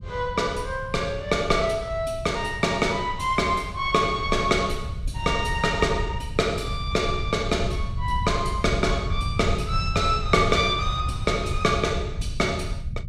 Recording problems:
low-frequency rumble; below 110 Hz, SNR 7 dB

